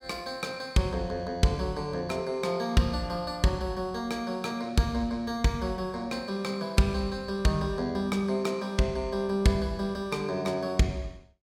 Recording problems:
none

